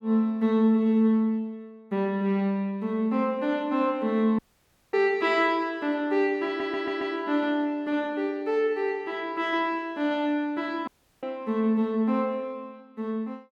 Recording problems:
dropout; at 4.5 s for 0.5 s and at 11 s
stutter; at 6.5 s

